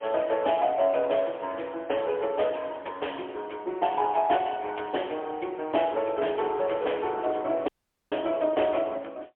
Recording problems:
telephone audio; 300 Hz to 3.3 kHz, AMR-NB, then MP3
dropout; at 7.5 s

